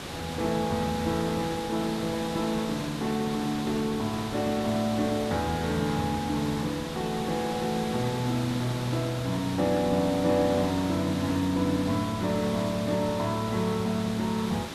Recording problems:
background hiss; slope -3 dB per octave, SNR 8 dB

